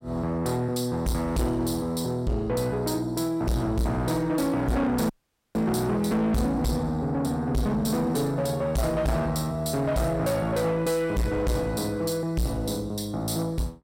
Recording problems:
distortion; soft clipping, signal-to-distortion ratio 7 dB
audio cutting out; at 5 s

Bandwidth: 16 kHz